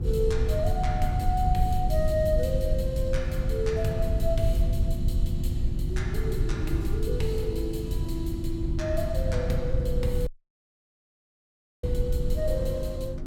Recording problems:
hum; 50 Hz, harmonics up to 350 Hz, SNR 8 dB
low-frequency rumble; below 92 Hz, SNR -1 dB
wind noise; below 390 Hz, SNR 18 dB
audio cutting out; at 10 s for 1.5 s

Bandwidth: 17 kHz